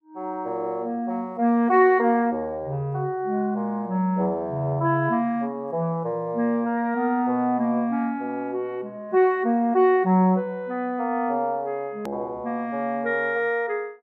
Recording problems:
hard cut with a click; at 12 s

